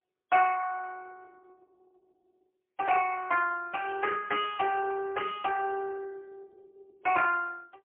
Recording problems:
telephone audio; 320 Hz to 3.3 kHz, AMR-NB, then MP3

